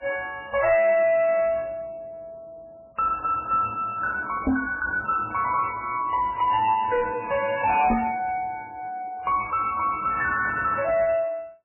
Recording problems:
lossy codec; MP3, then MP3, log-spectral distance 3 dB, nothing above 2.5 kHz
distorted audio; soft clipping, signal-to-distortion ratio 7 dB
microphone bump; at 4.5 s and at 8 s; peak +5 dB vs average level

